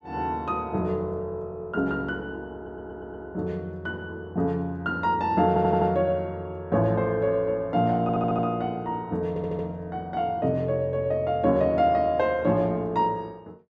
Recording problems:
audio stuttering; 4 times, first at 2.5 s

